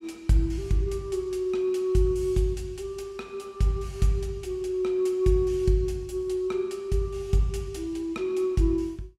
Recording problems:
none

